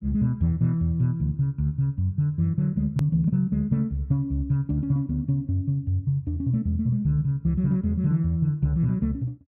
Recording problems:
hard cut with a click; at 3 s

